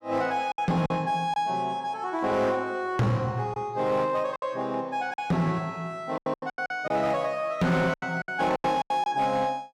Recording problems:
distorted audio; hard clipping, signal-to-distortion ratio 12 dB
lost packets; 9% of the sound replaced, filled with silence

